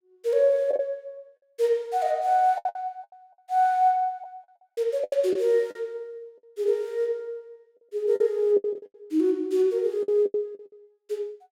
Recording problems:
packet loss; 10% of the sound replaced, filled with the last packet

